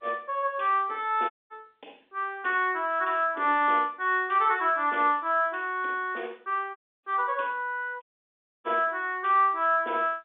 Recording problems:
phone line; 260 Hz to 3.7 kHz, G.711
audio cutting out; at 1.5 s, at 7 s and at 8 s for 0.5 s

